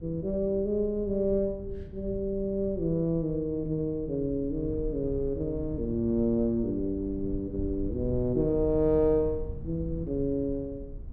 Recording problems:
low-frequency rumble; below 110 Hz, SNR 12 dB

